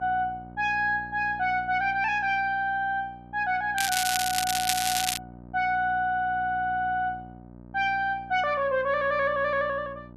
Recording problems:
electrical hum; 60 Hz, harmonics up to 1.3 kHz, SNR 19 dB
crackling; from 4 to 5 s; loose cable, SNR 1 dB

